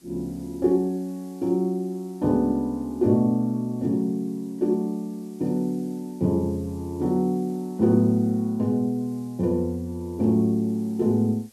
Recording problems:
hiss; SNR 30 dB

